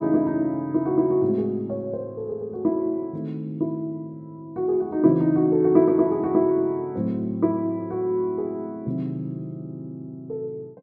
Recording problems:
none

